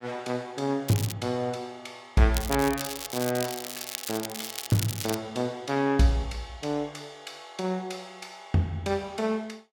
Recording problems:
crackle; at 1 s and from 2.5 to 5 s; loose cable, SNR 6 dB

